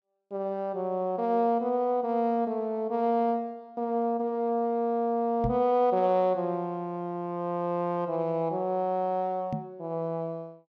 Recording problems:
microphone thump; at 5.5 s and at 9.5 s; peak +1 dB vs average level

